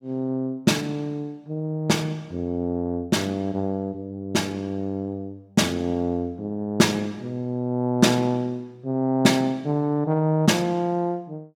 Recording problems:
none

